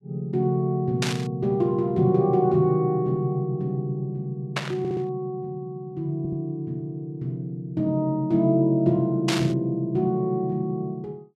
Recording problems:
burst of static; at 1 s, at 4.5 s and at 9.5 s; peak +2 dB vs average level
stutter; at 5 s and at 6 s

